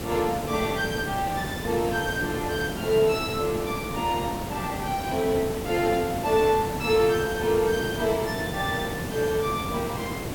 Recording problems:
hiss; slope -6 dB per octave, SNR 6 dB

